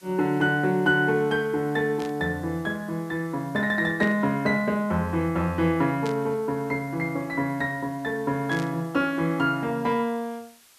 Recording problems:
background hiss; slope +1 dB per octave, SNR 27 dB
static burst; 4 times, first at 2 s; peak -9 dB vs average level

